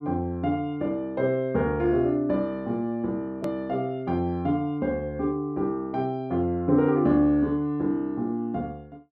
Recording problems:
click at an edit; at 3.5 s

